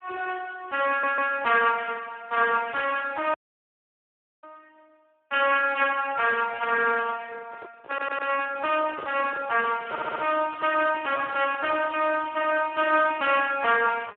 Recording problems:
telephone audio; 280 Hz to 3.2 kHz, Speex
audio stuttering; at 1 s, at 8 s and at 10 s
audio cutting out; at 3.5 s for 1 s
handling noise; from 7.5 to 12 s; peak -9 dB vs average level
crackle; from 9.5 to 13 s; loose cable, SNR 25 dB

